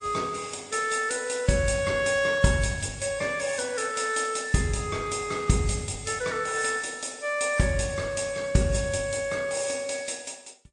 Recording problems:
codec artefacts; MP3, then MP3, log-spectral distance 6 dB, nothing above 9.2 kHz

